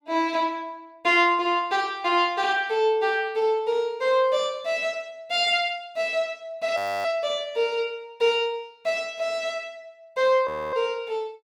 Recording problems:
frozen audio; at 7 s and at 10 s

